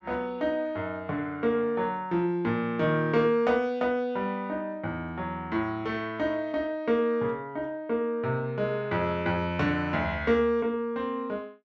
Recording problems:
low-pass filter; nothing above 8 kHz

